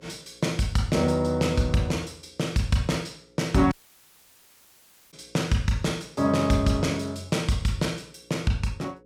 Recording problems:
electrical hum; 60 Hz, harmonics up to 540 Hz, SNR 30 dB
audio cutting out; at 3.5 s for 1.5 s

